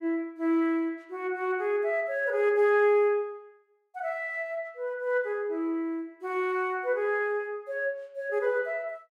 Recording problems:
none

